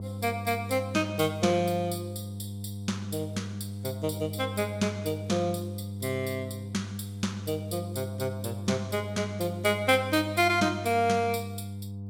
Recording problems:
hum; 50 Hz, harmonics up to 500 Hz, SNR 8 dB

